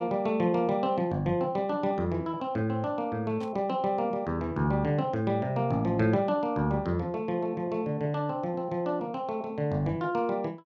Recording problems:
burst of static; at 3.5 s; peak -15 dB vs average level

